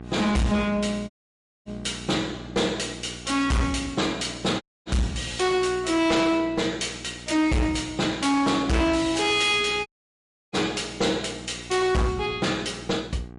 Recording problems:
codec artefacts; MP3, log-spectral distance 3 dB, nothing above 10.7 kHz
distortion; hard clipping, signal-to-distortion ratio 7 dB
electrical hum; 60 Hz, harmonics up to 1.6 kHz, SNR 18 dB
audio cutting out; at 1 s for 0.5 s, at 4.5 s and at 10 s for 0.5 s

